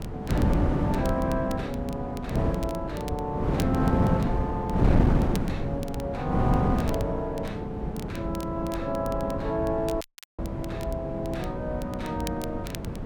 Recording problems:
wind noise; below 290 Hz, SNR -2 dB
crackling; vinyl, SNR 16 dB
dropout; at 10 s

